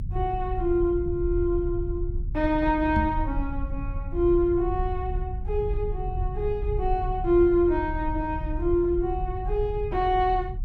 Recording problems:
low-frequency rumble; below 78 Hz, strongest tone 34 Hz, SNR 6 dB
microphone thump; at 3 s; peak +2 dB vs average level

